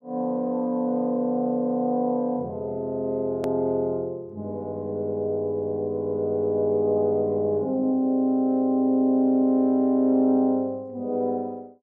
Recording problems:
hard cut with a click; at 3.5 s

